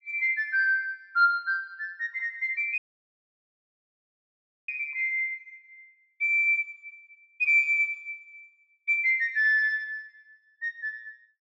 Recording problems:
audio cutting out; at 3 s for 2 s

